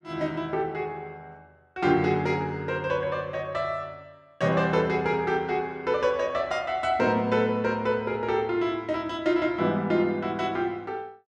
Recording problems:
none

